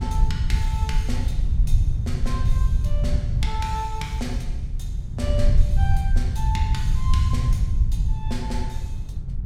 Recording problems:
hum; 60 Hz, harmonics up to 420 Hz, SNR 19 dB
rumble; below 82 Hz, SNR -7 dB
wind noise; below 130 Hz, SNR 12 dB

